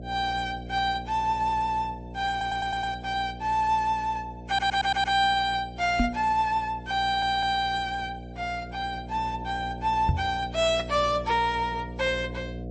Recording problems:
lossy compression; MP3, then MP3, log-spectral distance 2 dB, nothing above 7.3 kHz
hum; 60 Hz, harmonics up to 720 Hz, SNR 13 dB
stutter; at 2.5 s, at 4.5 s and at 7 s
knock on the microphone; at 6 s and at 10 s; peak +6 dB vs average level

